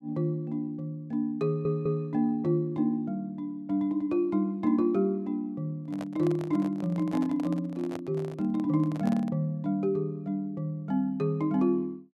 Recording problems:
audio stuttering; at 1.5 s
handling noise; from 6 to 9.5 s; peak -6 dB vs average level

